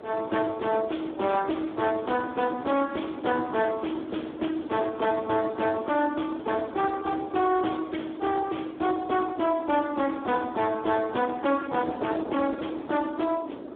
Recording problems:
phone line; 220 Hz to 3.6 kHz, Speex
distortion; soft clipping, signal-to-distortion ratio 11 dB
wind on the microphone; below 640 Hz, SNR 13 dB

